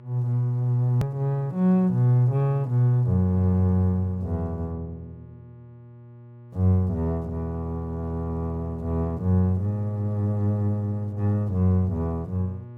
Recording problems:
mains hum; 60 Hz, harmonics up to 840 Hz, SNR 19 dB
edit click; at 1 s

